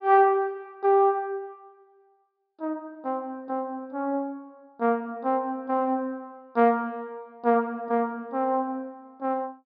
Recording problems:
treble cut off; nothing above 5.5 kHz

